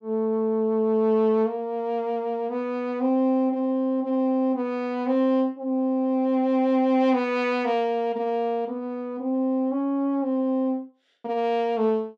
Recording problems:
none

